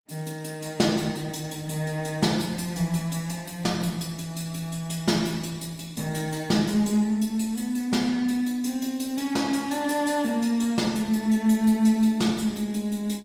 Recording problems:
codec artefacts; Opus, log-spectral distance 4 dB

